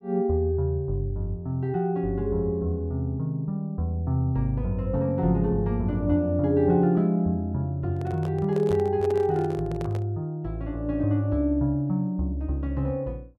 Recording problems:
handling noise; from 8 to 10 s; peak -7 dB vs average level

